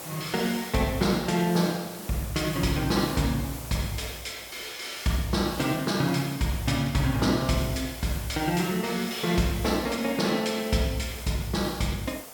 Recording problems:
background hiss; SNR 13 dB

